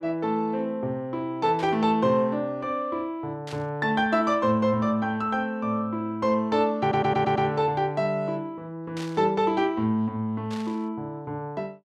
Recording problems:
burst of static; 4 times, first at 1.5 s; peak -11 dB vs average level
audio stuttering; at 7 s

